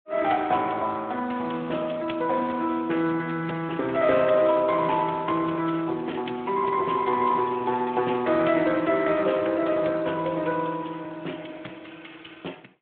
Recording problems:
phone line; 220 Hz to 3.4 kHz, Speex

